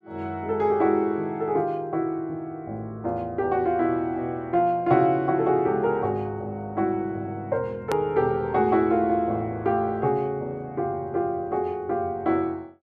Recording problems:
edit click; at 8 s

